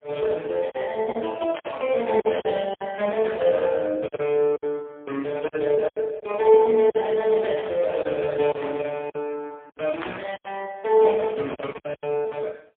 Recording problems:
telephone audio; 170 Hz to 3.5 kHz, AMR-NB, then MP3
lost packets; 8% of the sound replaced, filled with silence
static burst; at 1.5 s and at 10 s; peak -10 dB vs average level

